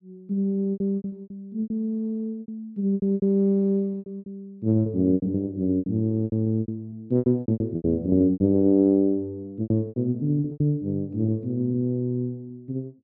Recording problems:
packet loss; 16% of the sound replaced, filled with repeated pitch periods

